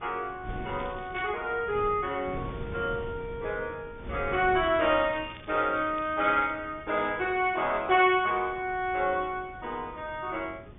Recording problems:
treble missing; nothing above 3.6 kHz
wind on the microphone; below 320 Hz, SNR 16 dB
crackling; at 0.5 s and from 5 to 6.5 s; loose cable, SNR 24 dB

